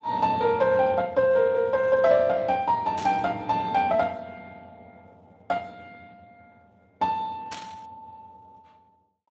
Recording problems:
lossy compression; Speex, log-spectral distance 3 dB
burst of static; at 3 s and at 7.5 s; peak -10 dB vs average level

